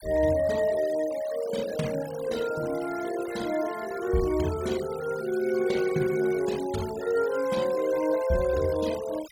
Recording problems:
denoising artefacts; signal-to-artefact ratio 16 dB

